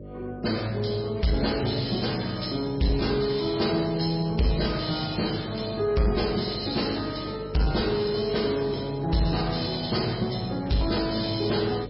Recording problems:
lossy compression; MP3, log-spectral distance 8 dB, nothing above 5.3 kHz
distorted audio; soft clipping, signal-to-distortion ratio 10 dB
hum; 50 Hz, harmonics up to 600 Hz, SNR 14 dB

